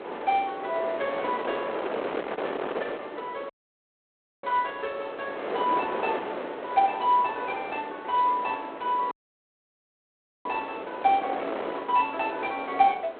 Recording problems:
phone line; 340 Hz to 3.9 kHz, G.726
wind noise; below 1 kHz, SNR 6 dB
dropout; at 3.5 s for 1 s and at 9 s for 1.5 s

